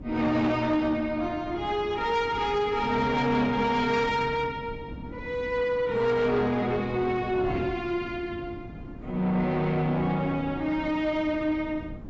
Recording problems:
lossy codec; AAC, log-spectral distance 2 dB, nothing above 7.6 kHz
distortion; soft clipping, signal-to-distortion ratio 11 dB
wind noise; below 310 Hz, SNR 14 dB

